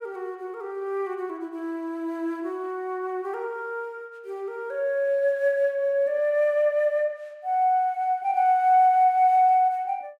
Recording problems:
none

